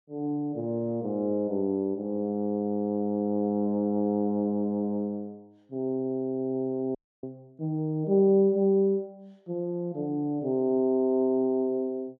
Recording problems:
audio cutting out; at 7 s

